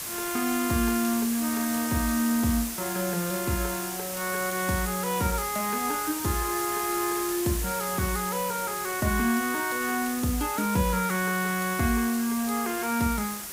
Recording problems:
hiss; slope -1 dB per octave, SNR 5 dB

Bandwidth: 15.5 kHz